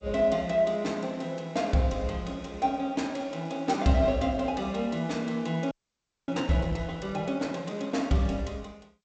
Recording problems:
codec artefacts; G.722, log-spectral distance 2 dB, nothing above 7.8 kHz
audio freezing; at 5.5 s for 0.5 s

